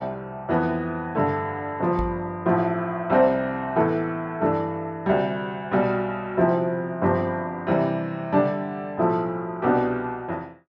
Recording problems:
knock on the microphone; at 2 s; peak -3 dB vs average level

